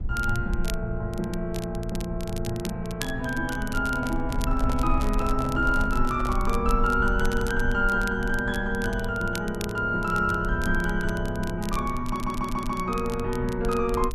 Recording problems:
low-frequency rumble; below 54 Hz, SNR 7 dB
crackle; vinyl, SNR 16 dB
handling noise; from 4 to 6.5 s; peak -6 dB vs average level
audio stuttering; at 12 s

